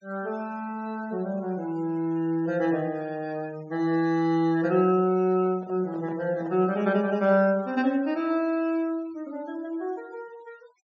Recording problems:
treble missing; nothing above 8 kHz
noise reduction artefacts; signal-to-artefact ratio 27 dB
microphone handling noise; from 5.5 to 7 s; peak -13 dB vs average level

